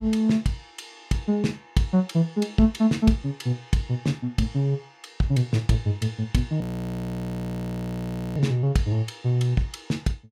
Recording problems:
audio freezing; at 6.5 s for 1.5 s

